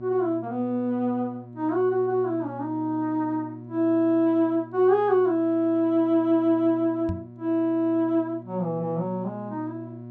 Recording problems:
mains hum; 60 Hz, harmonics up to 960 Hz, SNR 17 dB
knock on the microphone; at 7 s; peak -2 dB vs average level

